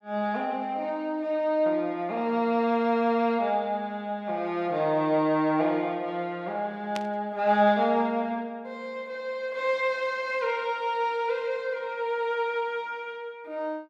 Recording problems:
burst of static; at 7 s; peak -4 dB vs average level

